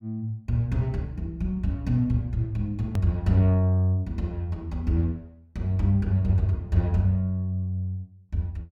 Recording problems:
edit click; at 3 s

